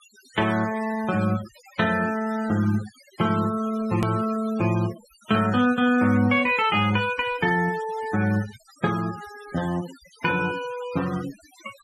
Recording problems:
denoising artefacts; signal-to-artefact ratio 16 dB
hard cut with a click; at 4 s

